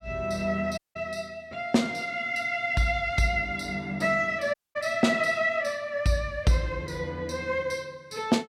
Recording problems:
audio cutting out; at 1 s and at 4.5 s

